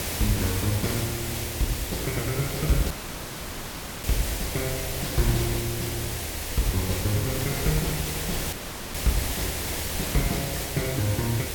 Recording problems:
electrical hum; 50 Hz, harmonics up to 850 Hz, SNR 27 dB
hiss; SNR 1 dB
low-frequency rumble; below 80 Hz, strongest tone 80 Hz, SNR 11 dB
crackle; from 1 to 2.5 s; loose cable, SNR 23 dB
audio cutting out; at 3 s for 1 s and at 8.5 s

